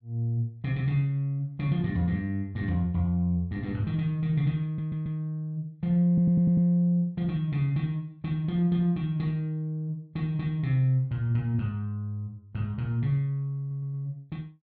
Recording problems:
stutter; at 4.5 s, at 6 s and at 14 s

